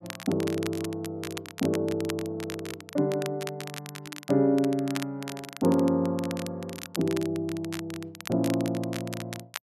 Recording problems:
crackle; vinyl, SNR 12 dB

